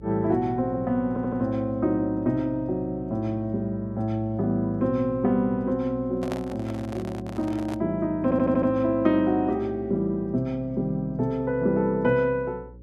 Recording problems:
hum; 60 Hz, harmonics up to 540 Hz, SNR 20 dB
audio stuttering; at 1 s and at 8 s
handling noise; from 6 to 8 s; peak -4 dB vs average level

